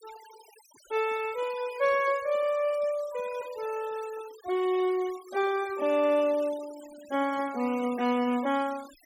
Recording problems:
noise reduction artefacts; signal-to-artefact ratio 19 dB

